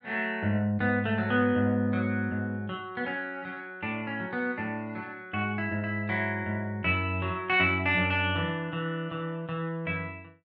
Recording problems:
none

